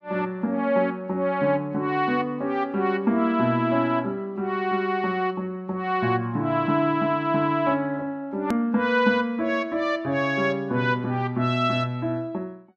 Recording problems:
hard cut with a click; at 8.5 s

